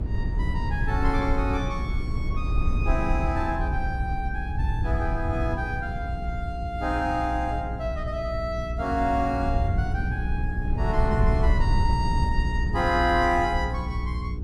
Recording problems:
hum; 60 Hz, harmonics up to 420 Hz, SNR 5 dB
low-frequency rumble; below 88 Hz, SNR 3 dB
wind on the microphone; below 100 Hz, SNR 6 dB

